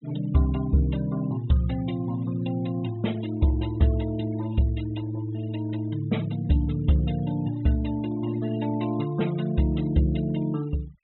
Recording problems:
treble cut off; nothing above 3.8 kHz
denoising artefacts; signal-to-artefact ratio 21 dB

